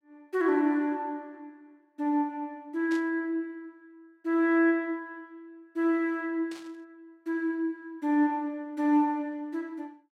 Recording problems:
static burst; at 3 s and at 6.5 s; peak -12 dB vs average level

